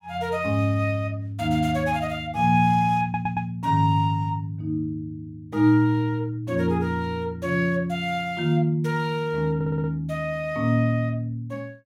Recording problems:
audio stuttering; at 3 s and at 9.5 s

